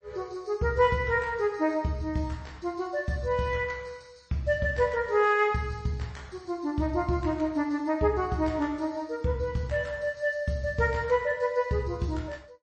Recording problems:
lossy codec; MP3, log-spectral distance 2 dB, nothing above 8.2 kHz

